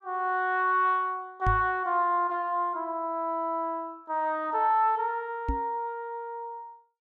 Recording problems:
microphone bump; at 1.5 s and at 5.5 s; peak +2 dB vs average level

